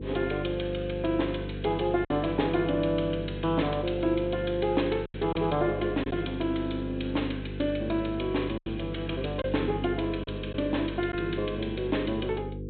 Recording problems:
treble cut off; nothing above 4 kHz
hum; 50 Hz, harmonics up to 500 Hz, SNR 7 dB
lost packets; 3% of the sound replaced, filled with silence

